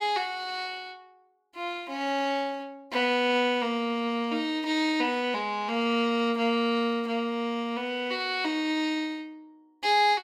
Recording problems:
none

